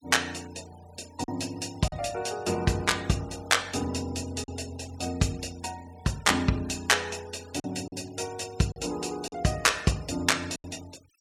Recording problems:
denoising artefacts; signal-to-artefact ratio 20 dB
packet loss; 3% of the sound replaced, filled with silence

